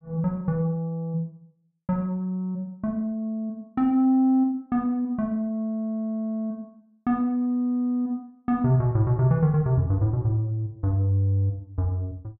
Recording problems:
none

